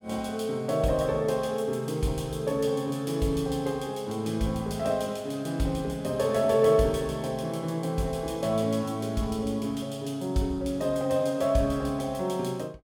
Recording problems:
none

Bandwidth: 18 kHz